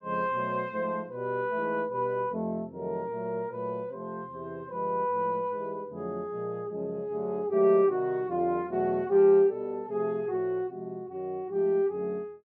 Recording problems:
none

